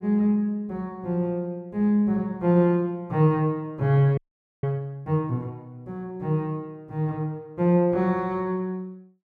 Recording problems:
audio freezing; at 4 s

